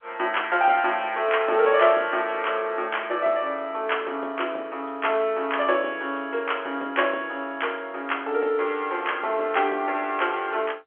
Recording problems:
phone line; 320 Hz to 3.3 kHz, G.711

